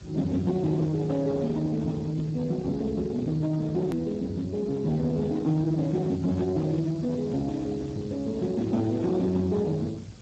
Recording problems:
codec artefacts; Speex, log-spectral distance 4 dB, nothing above 13.1 kHz
distorted audio; hard clipping, uneven, signal-to-distortion ratio 11 dB
hiss; slope +1 dB per octave, SNR 27 dB
rumble; below 250 Hz, SNR 17 dB
hard cut with a click; at 4 s

